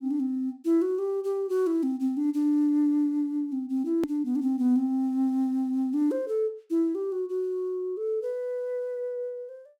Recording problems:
hard cut with a click; at 4 s

